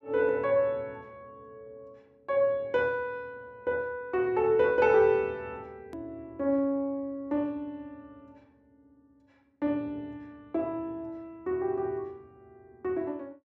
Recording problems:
hard cut with a click; at 6 s

